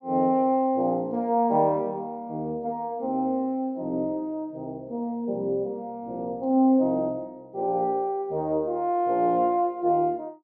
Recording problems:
none

